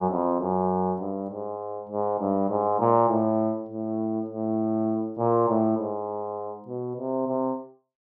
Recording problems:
none

